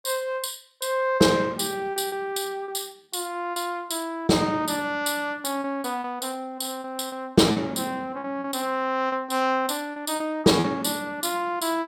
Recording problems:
packet loss; 6% of the sound replaced, filled with repeated pitch periods

